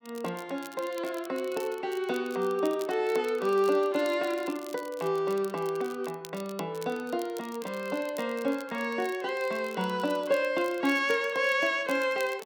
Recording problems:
crackle; vinyl, SNR 20 dB

